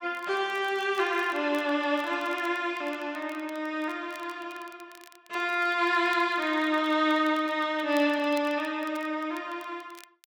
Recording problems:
crackle; vinyl, SNR 25 dB

